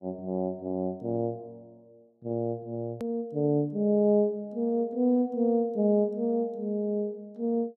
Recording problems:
edit click; at 3 s

